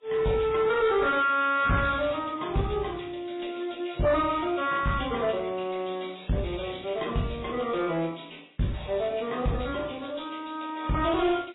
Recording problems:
lossy codec; AAC, then MP3, log-spectral distance 8 dB, nothing above 3.8 kHz
distortion; soft clipping, signal-to-distortion ratio 11 dB

